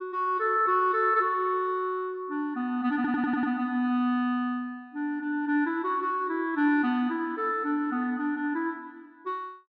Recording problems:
audio stuttering; at 3 s

